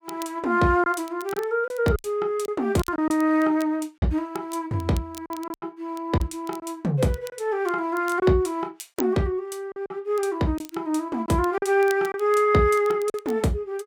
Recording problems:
crackling; vinyl, SNR 22 dB
lost packets; 6% of the sound replaced, filled with silence

